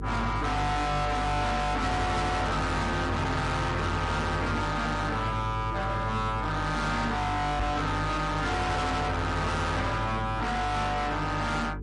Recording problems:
lossy codec; MP3, log-spectral distance 2 dB, nothing above 10.4 kHz
distortion; hard clipping, uneven, signal-to-distortion ratio 5 dB
electrical hum; 50 Hz, harmonics up to 450 Hz, SNR 8 dB
knock on the microphone; at 7.5 s; peak 0 dB vs average level

